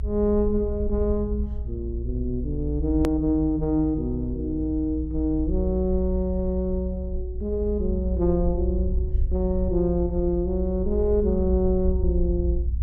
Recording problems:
rumble; below 62 Hz, strongest tone 60 Hz, SNR 4 dB
edit click; at 3 s

